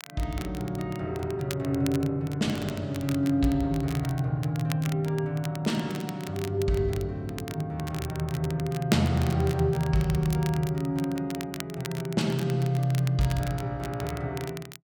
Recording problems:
crackle; vinyl, SNR 15 dB

